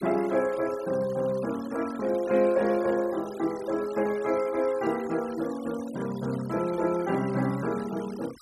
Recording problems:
noise reduction artefacts; signal-to-artefact ratio 19 dB

